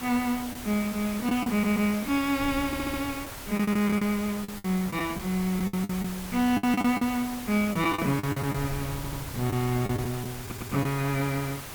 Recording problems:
background hiss; slope -3 dB per octave, SNR 11 dB
wind noise; below 140 Hz, SNR 17 dB
packet loss; 9% of the sound replaced, filled with the last packet
stutter; 4 times, first at 1.5 s

